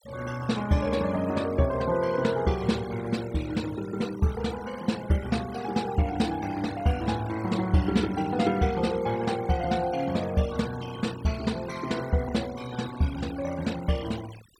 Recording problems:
denoising artefacts; signal-to-artefact ratio 17 dB

